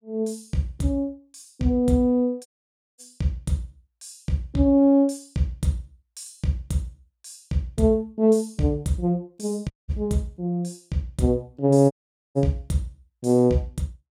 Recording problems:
audio cutting out; at 2.5 s for 0.5 s, at 9.5 s and at 12 s

